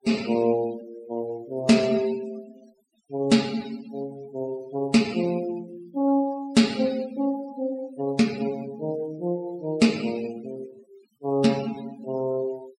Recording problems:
noise reduction artefacts; signal-to-artefact ratio 19 dB

